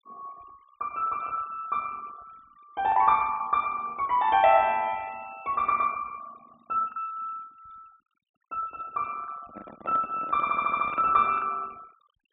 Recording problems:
treble cut off; nothing above 4 kHz
denoising artefacts; signal-to-artefact ratio 26 dB
lost packets; 3% of the sound replaced, filled with the last packet
handling noise; from 9.5 to 11 s; peak -10 dB vs average level
stutter; at 10 s

